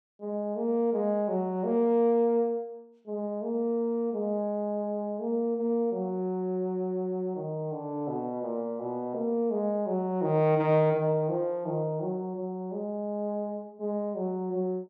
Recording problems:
none

